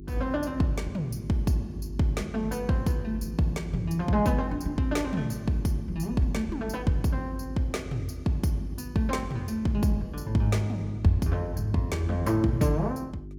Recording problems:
electrical hum; 50 Hz, harmonics up to 400 Hz, SNR 14 dB

